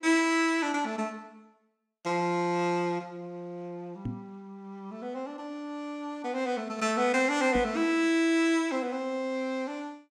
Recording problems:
knock on the microphone; at 4 s and at 7.5 s; peak -2 dB vs average level

